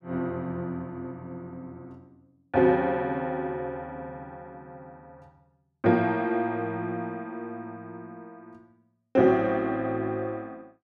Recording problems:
none

